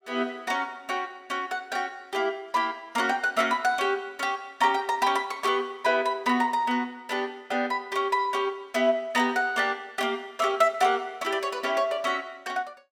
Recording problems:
none

